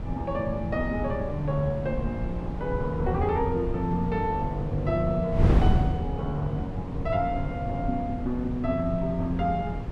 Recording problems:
wind on the microphone; below 170 Hz, SNR 3 dB

